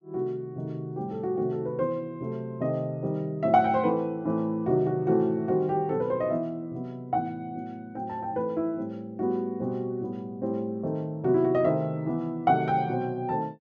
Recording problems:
none

